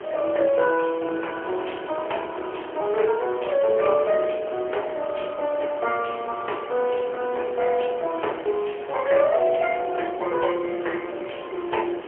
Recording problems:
phone line; 320 Hz to 3.2 kHz, AMR-NB, then MP3
background hiss; SNR 17 dB
wind noise; below 490 Hz, SNR 15 dB

